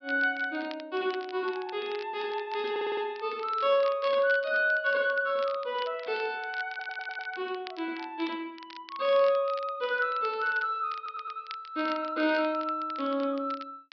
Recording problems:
low-pass filter; nothing above 5.5 kHz
crackle; vinyl, SNR 19 dB
audio stuttering; at 2.5 s, at 6.5 s and at 11 s

